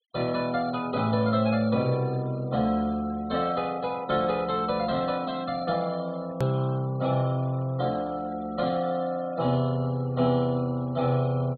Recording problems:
treble missing; nothing above 4.2 kHz
noise reduction artefacts; signal-to-artefact ratio 23 dB
hard cut with a click; at 6.5 s

